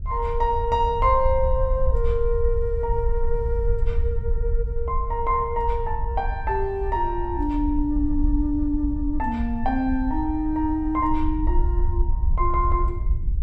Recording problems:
wind noise; below 62 Hz, SNR 3 dB

